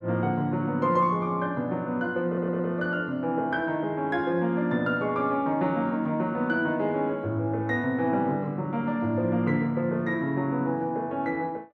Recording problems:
audio stuttering; at 2.5 s

